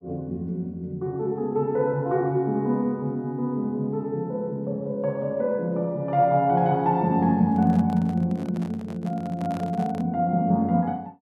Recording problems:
handling noise; from 7.5 to 10 s; peak -11 dB vs average level

